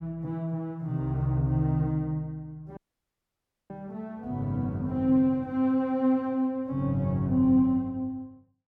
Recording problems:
audio cutting out; at 3 s for 1 s

